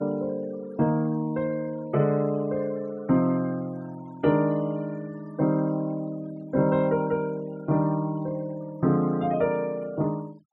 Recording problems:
noise reduction artefacts; signal-to-artefact ratio 25 dB

